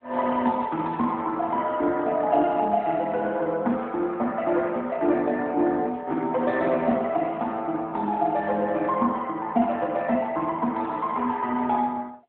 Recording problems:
telephone audio; 220 Hz to 3.6 kHz, AMR-NB

